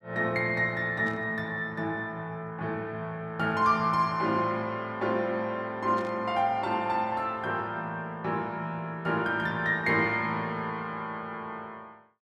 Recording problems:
static burst; at 1 s and at 6 s; peak -15 dB vs average level

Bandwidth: 13.5 kHz